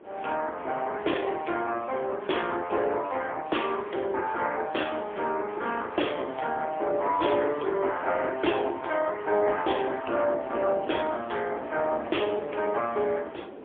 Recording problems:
phone line; 320 Hz to 3.4 kHz, AMR-NB, then MP3
wind noise; below 570 Hz, SNR 16 dB

